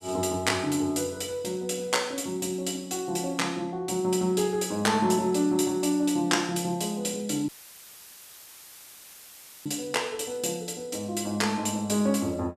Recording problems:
dropout; at 7.5 s for 2 s; filled with static

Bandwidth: 14.5 kHz